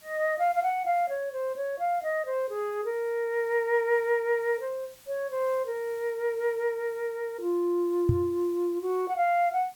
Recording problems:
hiss; slope 0 dB per octave, SNR 26 dB
microphone thump; at 8 s; peak +7 dB vs average level

